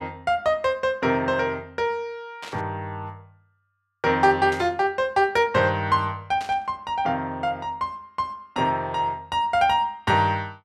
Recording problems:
static burst; at 2.5 s, at 4.5 s and at 6.5 s; peak -9 dB vs average level

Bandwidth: 14 kHz